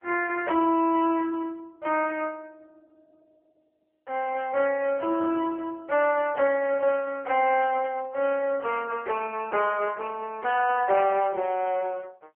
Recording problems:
telephone audio; 300 Hz to 3.1 kHz, AMR-NB

